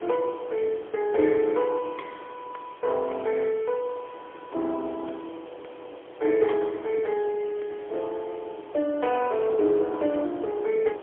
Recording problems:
phone line; 260 Hz to 3.6 kHz, AMR-NB, then MP3
hiss; SNR 27 dB
wind on the microphone; below 790 Hz, SNR 17 dB

